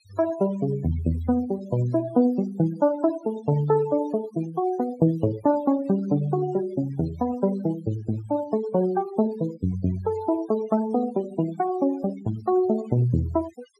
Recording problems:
noise reduction artefacts; signal-to-artefact ratio 17 dB

